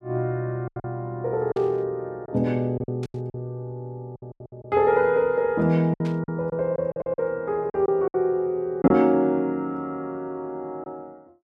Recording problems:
packet loss; 9% of the sound replaced, filled with silence
static burst; at 1.5 s, at 3 s and at 6 s; peak -13 dB vs average level

